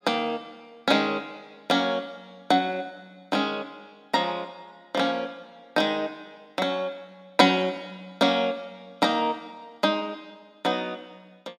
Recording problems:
none

